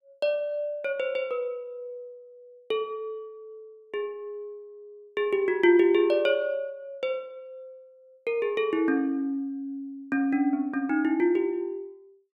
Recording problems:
none

